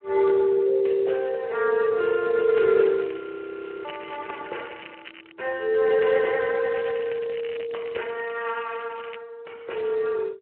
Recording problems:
phone line; 340 Hz to 3.1 kHz, Speex
crackling; from 3 to 5.5 s and from 6.5 to 9 s; loose cable, SNR 19 dB
frozen audio; at 3 s for 0.5 s

